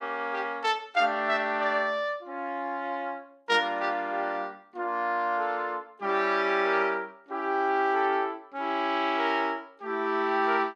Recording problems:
none

